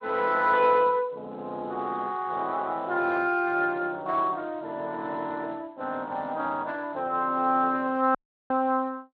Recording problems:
codec artefacts; Speex, log-spectral distance 3 dB
dropout; at 8 s

